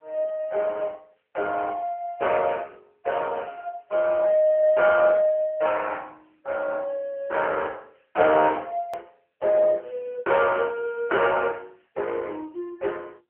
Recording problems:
phone line; 320 Hz to 3.2 kHz, AMR-NB
click at an edit; at 9 s

